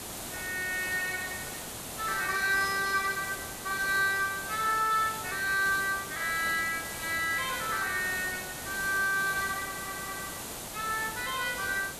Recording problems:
hiss; slope -3 dB per octave, SNR 8 dB
audio stuttering; at 9.5 s

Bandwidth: 14 kHz